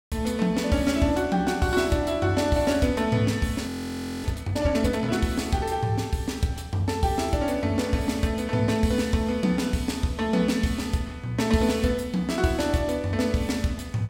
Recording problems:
frozen audio; at 3.5 s for 0.5 s

